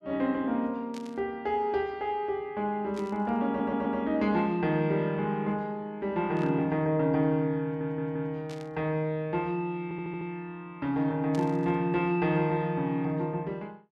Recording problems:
burst of static; 5 times, first at 1 s; peak -11 dB vs average level
stutter; at 3.5 s, at 7.5 s and at 10 s

